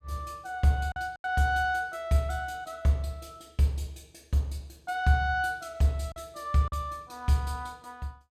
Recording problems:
packet loss; 3% of the sound replaced, filled with silence

